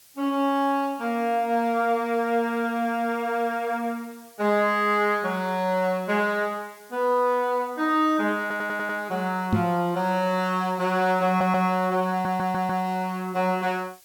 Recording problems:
hiss; slope +2 dB per octave, SNR 26 dB
stutter; at 8.5 s, at 11 s and at 12 s
knock on the microphone; at 9.5 s; peak +5 dB vs average level

